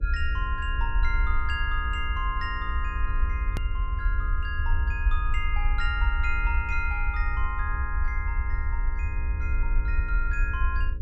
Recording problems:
electrical hum; 60 Hz, harmonics up to 540 Hz, SNR 11 dB
rumble; below 62 Hz, SNR -3 dB
click at an edit; at 3.5 s

